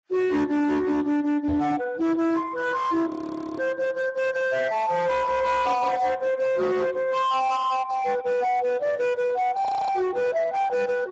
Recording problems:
lossy compression; Speex, log-spectral distance 3 dB
distorted audio; hard clipping, signal-to-distortion ratio 10 dB
knock on the microphone; at 1.5 s; peak -5 dB vs average level
frozen audio; at 3 s and at 9.5 s

